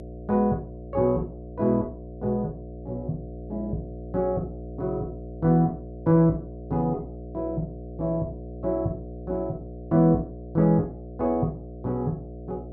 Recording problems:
hum; 60 Hz, harmonics up to 720 Hz, SNR 12 dB

